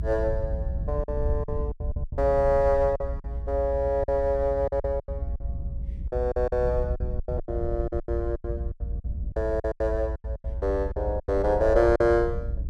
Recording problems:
rumble; below 76 Hz, SNR 6 dB
lost packets; 15% of the sound replaced, filled with silence

